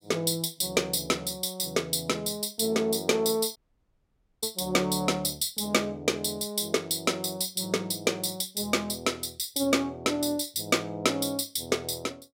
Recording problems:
dropout; at 3.5 s for 1 s

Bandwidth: 16 kHz